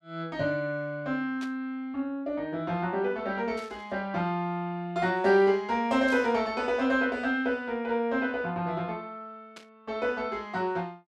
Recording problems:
static burst; 4 times, first at 1.5 s; peak -11 dB vs average level

